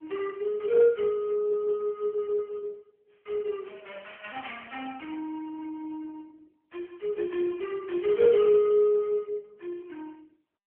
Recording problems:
telephone audio; 320 Hz to 3.3 kHz, AMR-NB

